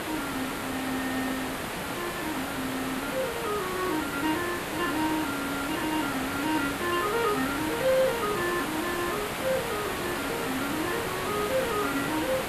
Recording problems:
background hiss; SNR 1 dB

